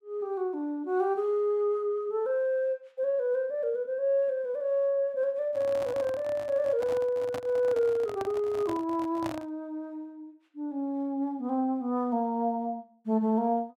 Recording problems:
handling noise; from 5.5 to 9.5 s; peak -3 dB vs average level

